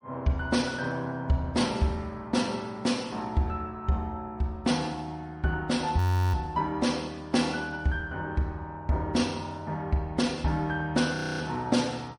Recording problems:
lossy codec; MP3, log-spectral distance 2 dB
audio freezing; at 6 s and at 11 s

